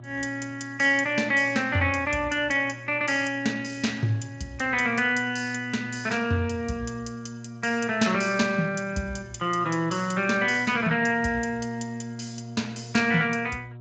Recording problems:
lossy compression; Speex, log-spectral distance 4 dB, nothing above 7.3 kHz
hum; 60 Hz, harmonics up to 960 Hz, SNR 18 dB

